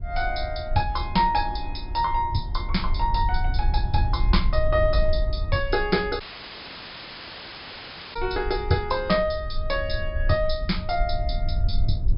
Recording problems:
low-pass filter; nothing above 5.5 kHz
rumble; below 62 Hz, SNR 4 dB
dropout; at 6 s for 2 s

